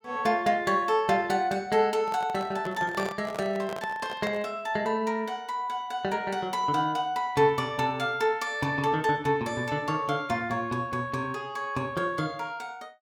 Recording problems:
microphone handling noise; from 2 to 4.5 s; peak -4 dB vs average level

